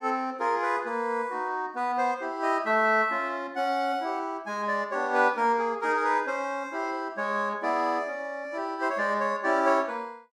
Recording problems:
none

